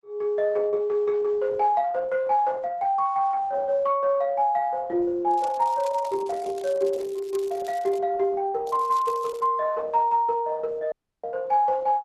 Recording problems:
codec artefacts; Opus, log-spectral distance 2 dB
crackling; from 5.5 to 8 s and at 8.5 s; loose cable, SNR 24 dB
dropout; at 11 s

